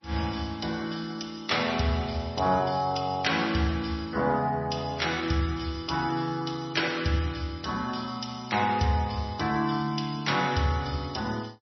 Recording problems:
lossy codec; MP3, log-spectral distance 7 dB, nothing above 5.8 kHz

